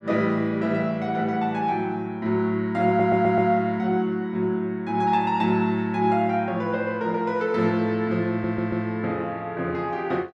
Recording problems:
audio stuttering; at 3 s and at 8.5 s

